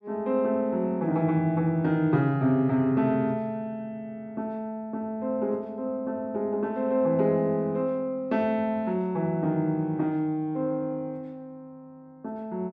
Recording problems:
none

